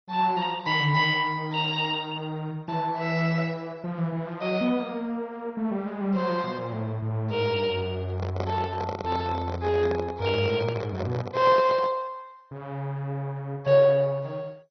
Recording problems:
codec artefacts; MP2, log-spectral distance 3 dB, nothing above 5.2 kHz
handling noise; from 8 to 12 s; peak -1 dB vs average level

